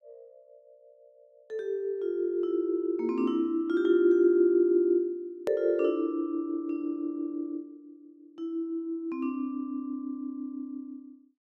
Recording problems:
edit click; at 5.5 s

